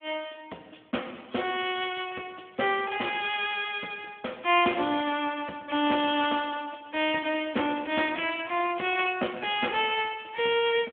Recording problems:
phone line; 260 Hz to 3.5 kHz, Speex

